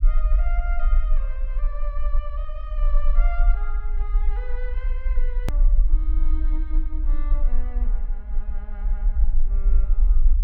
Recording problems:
rumble; below 40 Hz, strongest tone 20 Hz, SNR -16 dB
edit click; at 5.5 s

